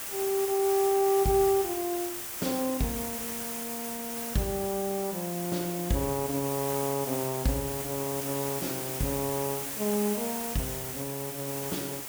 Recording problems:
hiss; slope -1 dB per octave, SNR 4 dB

